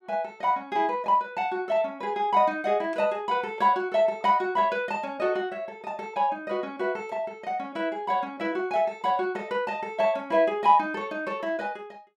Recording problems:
none

